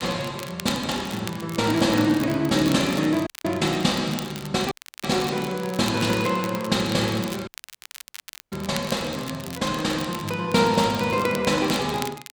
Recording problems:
crackle; vinyl, SNR 15 dB
dropout; at 3.5 s, at 4.5 s and at 7.5 s for 1 s

